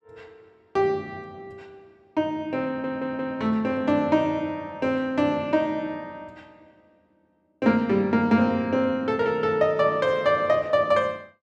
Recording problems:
stutter; at 2.5 s

